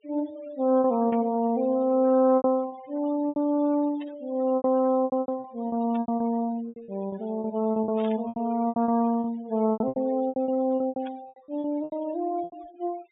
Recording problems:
low-pass filter; nothing above 4 kHz
noise reduction artefacts; signal-to-artefact ratio 22 dB
packet loss; 15% of the sound replaced, filled with repeated pitch periods
burst of static; 5 times, first at 1 s; peak -15 dB vs average level

